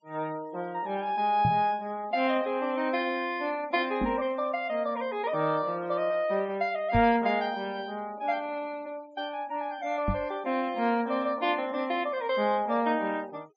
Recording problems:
treble cut off; nothing above 8 kHz
noise reduction artefacts; signal-to-artefact ratio 25 dB
knock on the microphone; 4 times, first at 1.5 s; peak +3 dB vs average level

